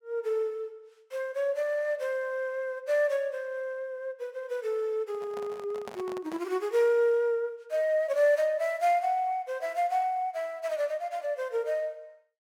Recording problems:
microphone handling noise; from 5 to 6.5 s; peak -8 dB vs average level

